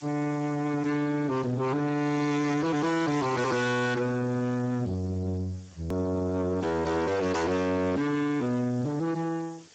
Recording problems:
lossy codec; Speex, log-spectral distance 5 dB, nothing above 7.3 kHz
distorted audio; soft clipping, signal-to-distortion ratio 6 dB
hiss; slope 0 dB per octave, SNR 26 dB
edit click; at 6 s

